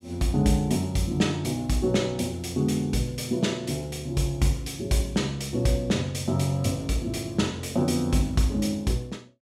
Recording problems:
none

